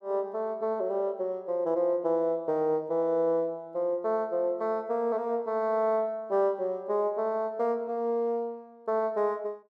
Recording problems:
none

